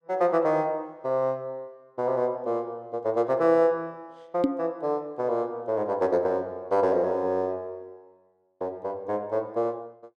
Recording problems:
microphone thump; at 4.5 s; peak +7 dB vs average level

